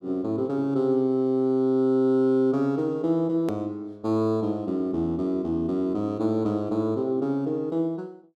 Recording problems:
edit click; at 3.5 s

